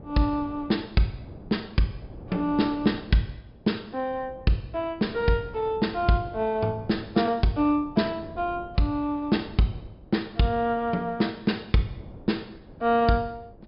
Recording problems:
treble cut off; nothing above 5.2 kHz
wind noise; below 380 Hz, SNR 19 dB

